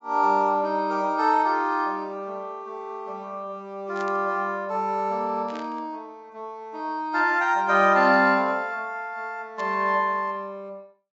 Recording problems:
treble cut off; nothing above 8 kHz
static burst; at 4 s, at 5.5 s and at 9.5 s; peak -15 dB vs average level

